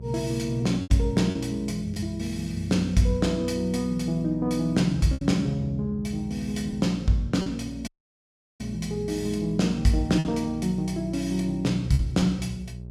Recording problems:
hum; 60 Hz, harmonics up to 600 Hz, SNR 14 dB
lost packets; 4% of the sound replaced, filled with repeated pitch periods
audio cutting out; at 8 s for 0.5 s

